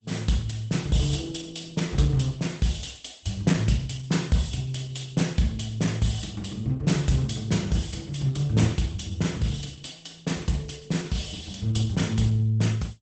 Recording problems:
lossy compression; Opus, log-spectral distance 5 dB, nothing above 8 kHz

